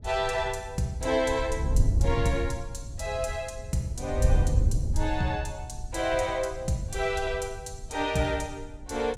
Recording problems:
wind noise; below 94 Hz, SNR 2 dB

